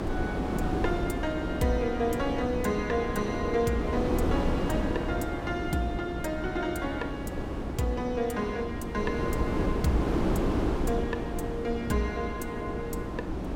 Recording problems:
mains hum; 60 Hz, harmonics up to 300 Hz, SNR 11 dB
wind on the microphone; below 430 Hz, SNR 0 dB

